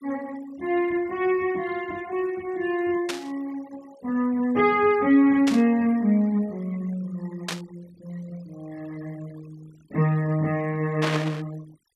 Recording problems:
noise reduction artefacts; signal-to-artefact ratio 25 dB
burst of static; 4 times, first at 3 s; peak -1 dB vs average level

